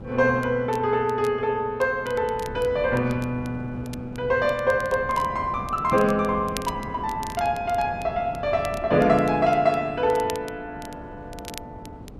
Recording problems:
wind noise; below 340 Hz, SNR 16 dB
crackle; vinyl, SNR 21 dB

